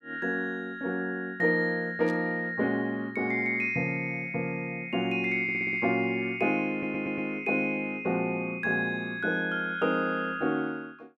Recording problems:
static burst; at 2 s; peak -16 dB vs average level
audio stuttering; at 5.5 s and at 6.5 s

